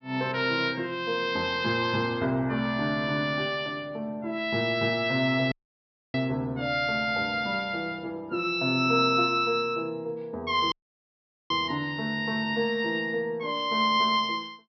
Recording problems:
treble missing; nothing above 5.5 kHz
audio cutting out; at 5.5 s for 0.5 s and at 11 s for 1 s

